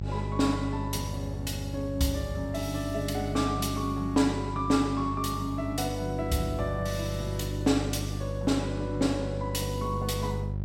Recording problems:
hum; 50 Hz, harmonics up to 550 Hz, SNR 5 dB

